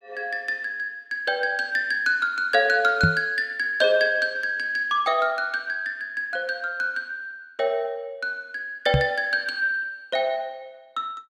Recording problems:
microphone thump; at 3 s and at 9 s; peak +7 dB vs average level

